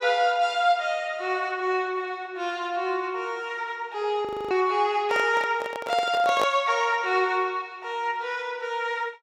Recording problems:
audio freezing; at 4.5 s
handling noise; from 5 to 6.5 s; peak +3 dB vs average level

